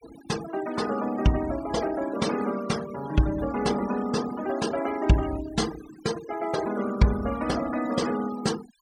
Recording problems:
noise reduction artefacts; signal-to-artefact ratio 14 dB

